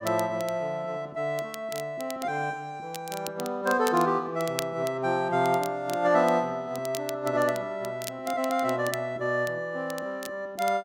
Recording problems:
crackle; vinyl, SNR 15 dB

